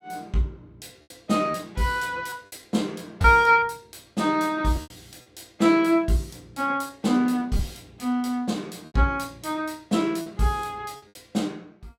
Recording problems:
packet loss; 5% of the sound replaced, filled with repeated pitch periods

